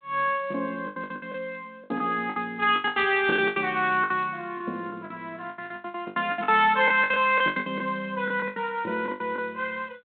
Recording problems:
phone line; 240 Hz to 3.6 kHz, G.726
packet loss; 18% of the sound replaced, filled with the last packet

